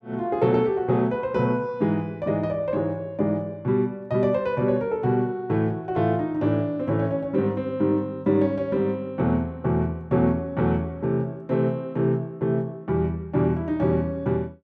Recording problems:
none

